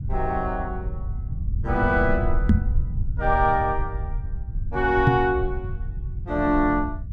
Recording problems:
rumble; below 86 Hz, SNR 6 dB
microphone bump; at 2.5 s and at 5 s; peak +8 dB vs average level

